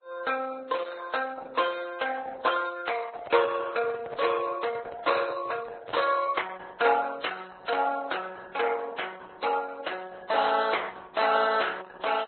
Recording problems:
lossy codec; Opus, then Vorbis, log-spectral distance 5 dB, nothing above 4.1 kHz
handling noise; from 3 to 6 s; peak -4 dB vs average level

